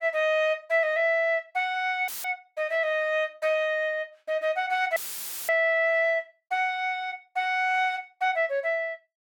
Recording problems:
audio cutting out; at 2 s and at 5 s for 0.5 s; filled with static

